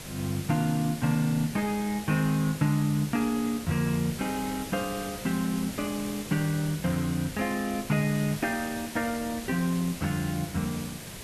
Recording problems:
background hiss; SNR 11 dB

